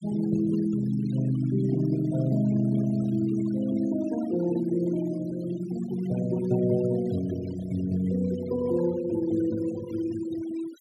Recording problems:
noise reduction artefacts; signal-to-artefact ratio 18 dB

